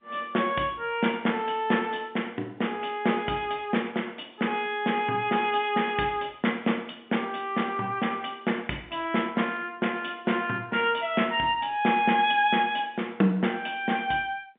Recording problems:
telephone audio; 190 Hz to 3.5 kHz, G.711

